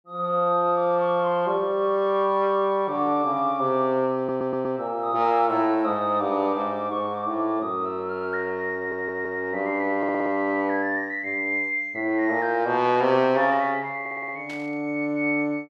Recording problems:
audio stuttering; 4 times, first at 4 s
burst of static; at 14 s; peak -14 dB vs average level

